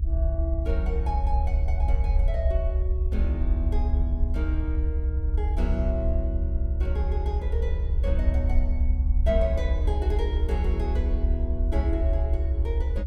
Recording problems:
low-frequency rumble; below 70 Hz, SNR -8 dB

